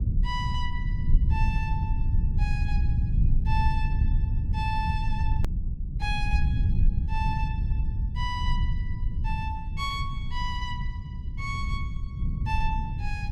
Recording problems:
low-frequency rumble; below 96 Hz, SNR -6 dB
edit click; at 5.5 s

